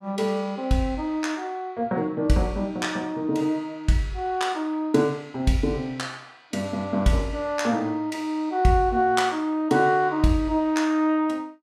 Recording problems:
none

